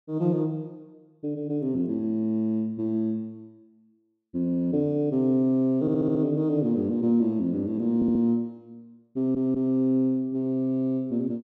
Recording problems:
stutter; at 6 s, at 8 s and at 9 s

